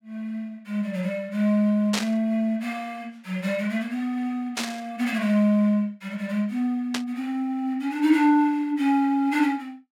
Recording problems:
static burst; at 2 s, at 4.5 s and at 7 s; peak +2 dB vs average level

